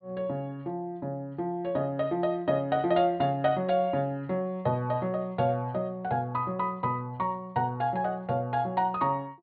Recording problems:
treble missing; nothing above 4.4 kHz

